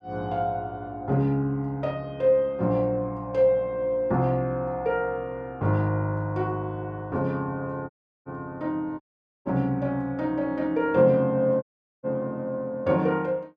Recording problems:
audio cutting out; at 8 s, at 9 s and at 12 s

